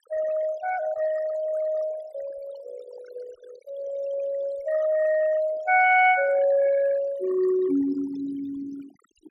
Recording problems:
denoising artefacts; signal-to-artefact ratio 18 dB

